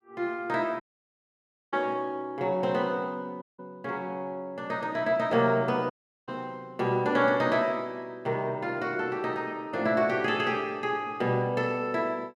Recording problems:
audio cutting out; at 1 s for 1 s, at 3.5 s and at 6 s

